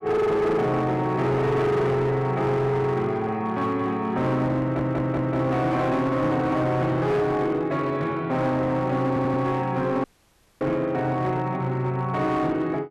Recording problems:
distorted audio; hard clipping, signal-to-distortion ratio 11 dB
audio stuttering; at 4.5 s and at 9 s
audio cutting out; at 10 s for 0.5 s

